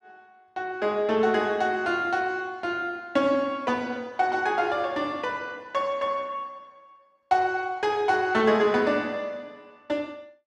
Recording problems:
none

